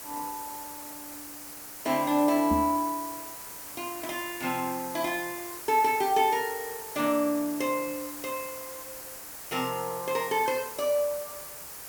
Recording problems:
background hiss; SNR 10 dB
microphone thump; at 2.5 s; peak +1 dB vs average level

